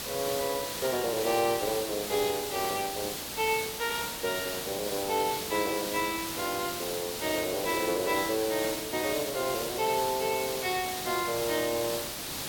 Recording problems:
hiss; slope -1 dB per octave, SNR 3 dB

